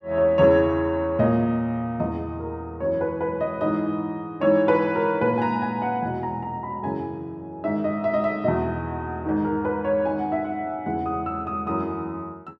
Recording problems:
none

